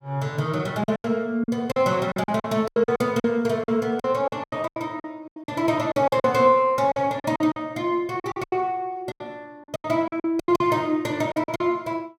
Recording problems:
packet loss; 16% of the sound replaced, filled with silence

